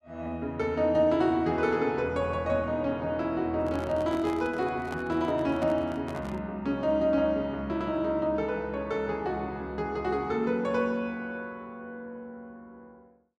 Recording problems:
microphone handling noise; from 3.5 to 6.5 s; peak -7 dB vs average level

